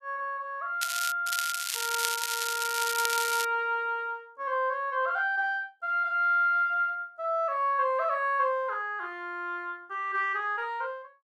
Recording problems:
crackling; at 1 s and from 1.5 to 3.5 s; loose cable, SNR 3 dB

